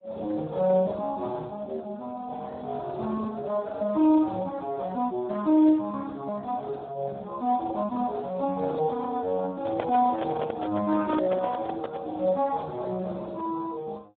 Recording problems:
phone line; 240 Hz to 2.2 kHz, Speex
microphone handling noise; from 9.5 to 12 s; peak -2 dB vs average level

